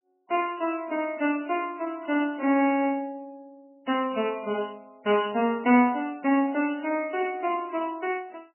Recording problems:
lossy codec; MP3, log-spectral distance 3 dB, nothing above 2.7 kHz

